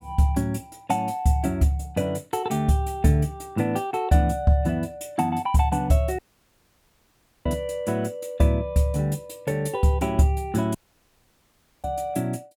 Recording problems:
dropout; at 6 s for 1.5 s and at 11 s for 1 s

